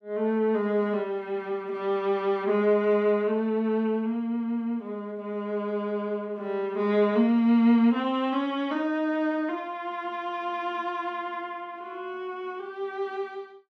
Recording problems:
none

